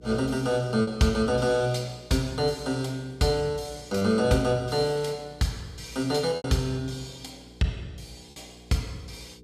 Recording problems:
hum; 60 Hz, harmonics up to 480 Hz, SNR 24 dB
packet loss; 2% of the sound replaced, filled with repeated pitch periods

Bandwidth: 14.5 kHz